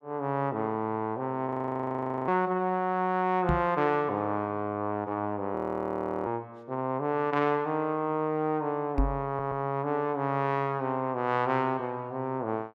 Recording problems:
frozen audio; at 1.5 s for 1 s and at 5.5 s for 0.5 s
knock on the microphone; at 3.5 s and at 9 s; peak +5 dB vs average level
audio stuttering; at 9.5 s

